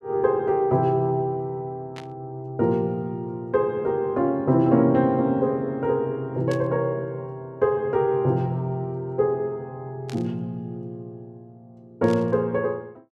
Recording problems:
static burst; 4 times, first at 2 s; peak -11 dB vs average level

